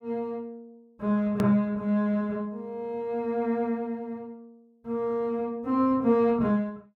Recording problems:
click at an edit; at 1.5 s

